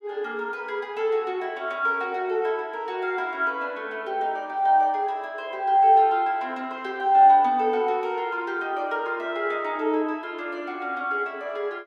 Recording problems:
none

